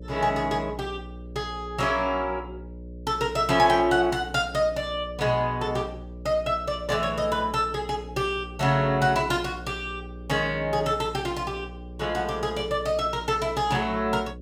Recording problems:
electrical hum; 60 Hz, harmonics up to 600 Hz, SNR 15 dB

